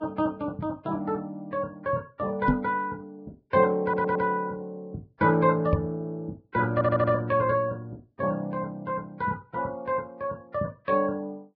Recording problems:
lossy codec; Vorbis, log-spectral distance 2 dB
knock on the microphone; at 2.5 s and at 5.5 s; peak +8 dB vs average level
stutter; at 4 s and at 6.5 s

